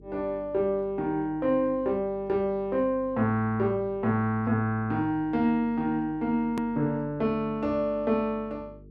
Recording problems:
mains hum; 50 Hz, harmonics up to 450 Hz, SNR 23 dB
edit click; at 6.5 s

